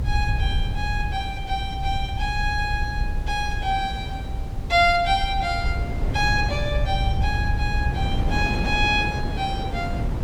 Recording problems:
background hiss; slope -2 dB per octave, SNR 26 dB
rumble; below 90 Hz, SNR 4 dB
wind noise; below 340 Hz, SNR 8 dB

